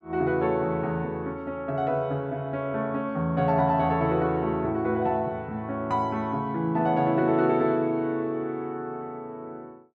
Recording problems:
none

